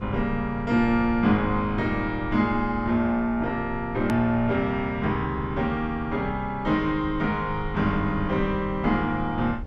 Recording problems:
low-frequency rumble; below 96 Hz, SNR 14 dB
edit click; at 4 s

